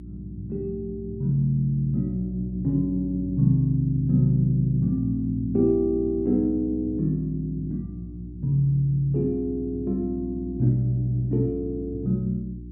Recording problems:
electrical hum; 60 Hz, harmonics up to 360 Hz, SNR 12 dB

